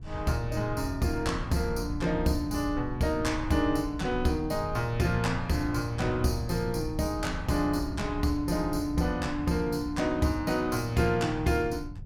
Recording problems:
wind on the microphone; below 110 Hz, SNR 10 dB

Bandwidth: 18 kHz